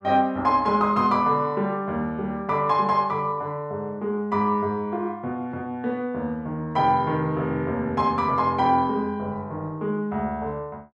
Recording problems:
none

